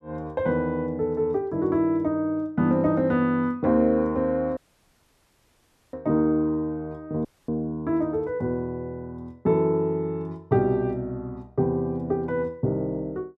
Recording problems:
dropout; at 4.5 s for 1.5 s and at 7.5 s

